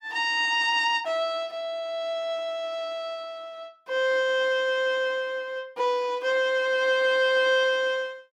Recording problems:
none

